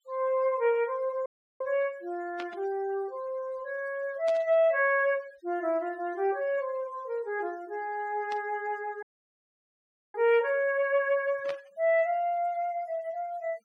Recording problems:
denoising artefacts; signal-to-artefact ratio 27 dB
dropout; at 1.5 s and at 9 s for 1 s
static burst; 4 times, first at 2.5 s; peak -7 dB vs average level

